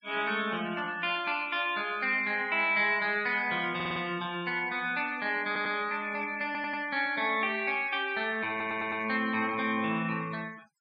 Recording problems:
denoising artefacts; signal-to-artefact ratio 21 dB
audio stuttering; 4 times, first at 4 s

